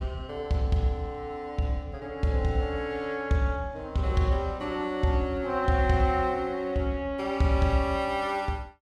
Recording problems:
none

